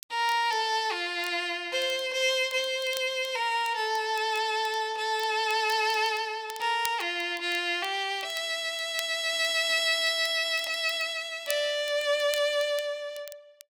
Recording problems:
crackling; vinyl, SNR 19 dB

